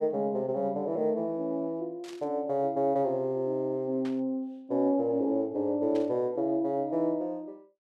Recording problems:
burst of static; at 2 s, at 4 s and at 6 s; peak -13 dB vs average level

